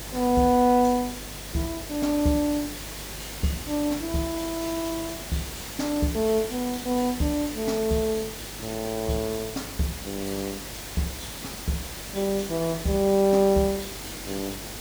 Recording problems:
electrical hum; 50 Hz, harmonics up to 550 Hz, SNR 19 dB
hiss; slope -2 dB per octave, SNR 9 dB

